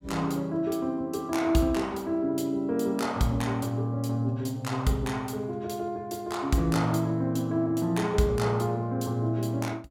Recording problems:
none

